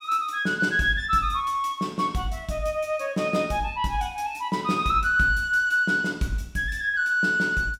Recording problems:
none

